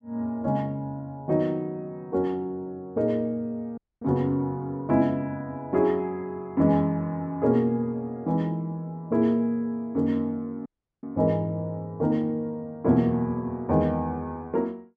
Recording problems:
dropout; at 4 s and at 11 s

